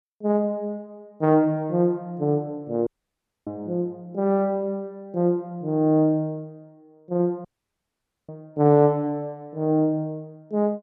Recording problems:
audio cutting out; at 3 s for 0.5 s and at 7.5 s for 1 s

